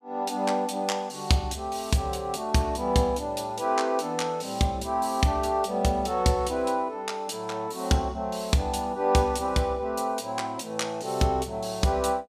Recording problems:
none

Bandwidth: 14.5 kHz